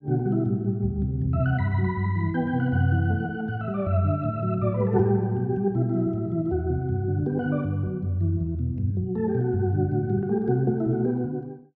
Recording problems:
none

